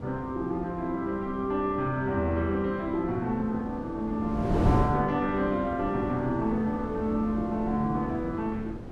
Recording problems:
wind on the microphone; below 350 Hz, SNR 7 dB

